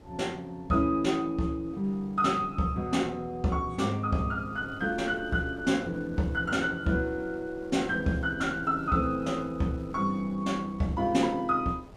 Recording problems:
wind noise; below 550 Hz, SNR 20 dB

